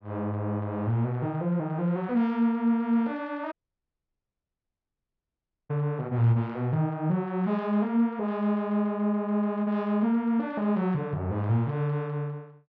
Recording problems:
audio cutting out; at 3.5 s for 2 s

